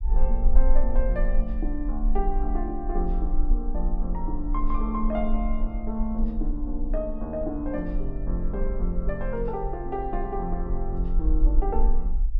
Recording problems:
rumble; below 38 Hz, strongest tone 18 Hz, SNR -2 dB

